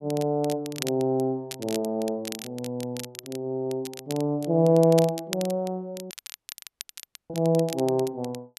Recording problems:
crackle; vinyl, SNR 14 dB
dropout; at 6 s for 1 s

